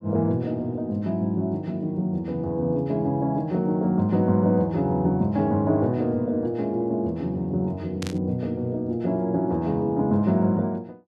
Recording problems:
static burst; at 8 s; peak -7 dB vs average level

